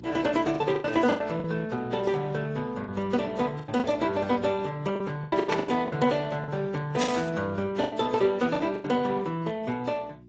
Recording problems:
lossy codec; Speex, then AAC, log-spectral distance 3 dB
hum; 60 Hz, harmonics up to 360 Hz, SNR 22 dB
packet loss; 10% of the sound replaced, filled with the last packet
burst of static; at 5.5 s and at 7 s; peak +2 dB vs average level

